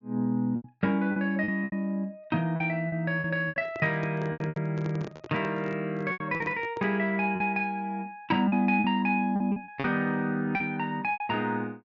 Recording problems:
treble missing; nothing above 7.2 kHz
lost packets; 11% of the sound replaced, filled with repeated pitch periods
handling noise; from 3.5 to 7 s; peak -7 dB vs average level

